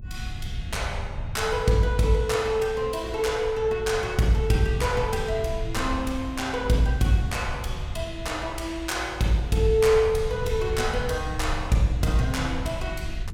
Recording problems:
rumble; below 96 Hz, SNR 10 dB

